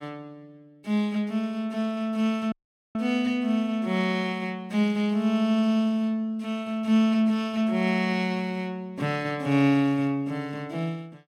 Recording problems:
dropout; at 2.5 s

